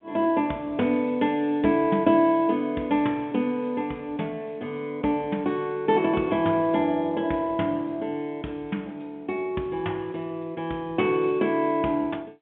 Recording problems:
phone line; 170 Hz to 3.7 kHz, G.711

